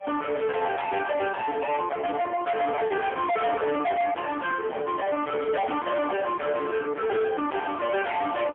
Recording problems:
telephone audio; 260 Hz to 3.5 kHz, AMR-NB, then MP3
distortion; soft clipping, signal-to-distortion ratio 6 dB
packet loss; 17% of the sound replaced, filled with repeated pitch periods

